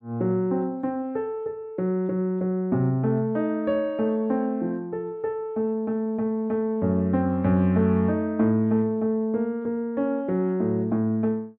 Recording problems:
none

